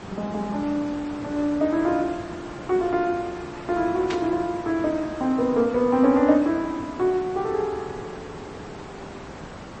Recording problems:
codec artefacts; MP3, then MP3, log-spectral distance 3 dB, nothing above 8 kHz
background hiss; slope -6 dB per octave, SNR 14 dB
burst of static; at 4 s; peak -4 dB vs average level

